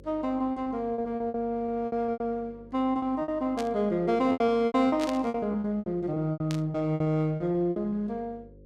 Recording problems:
electrical hum; 50 Hz, harmonics up to 550 Hz, SNR 24 dB
packet loss; 15% of the sound replaced, filled with repeated pitch periods
static burst; at 3.5 s, at 5 s and at 6.5 s; peak -6 dB vs average level

